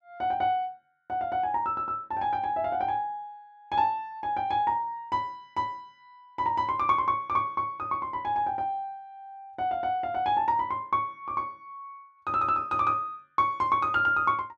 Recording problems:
none

